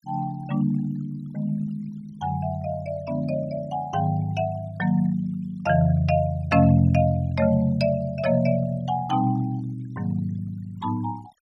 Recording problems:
denoising artefacts; signal-to-artefact ratio 24 dB

